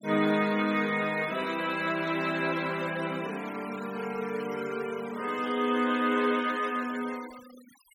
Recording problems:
noise reduction artefacts; signal-to-artefact ratio 17 dB

